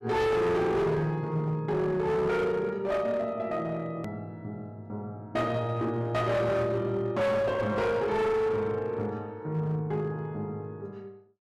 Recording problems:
distortion; hard clipping, uneven, signal-to-distortion ratio 7 dB
click at an edit; at 4 s

